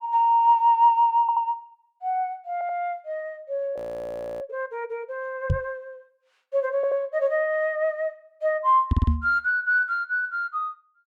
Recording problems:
audio stuttering; 4 times, first at 1 s
frozen audio; at 4 s for 0.5 s
knock on the microphone; at 5.5 s and at 9 s; peak +6 dB vs average level

